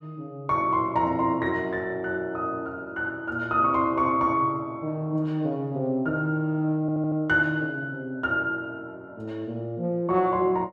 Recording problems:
audio stuttering; at 7 s

